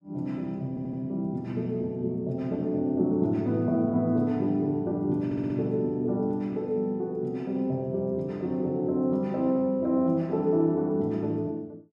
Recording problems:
stutter; at 0.5 s and at 5.5 s

